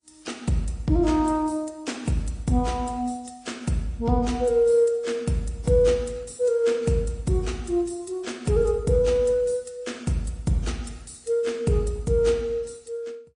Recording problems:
codec artefacts; MP3, then AAC, log-spectral distance 3 dB, nothing above 9.8 kHz

